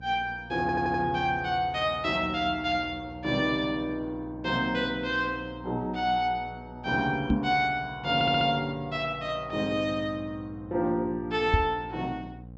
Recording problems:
treble cut off; nothing above 8 kHz
hum; 60 Hz, harmonics up to 780 Hz, SNR 18 dB
audio stuttering; at 0.5 s and at 8 s
knock on the microphone; at 7.5 s and at 12 s; peak +7 dB vs average level

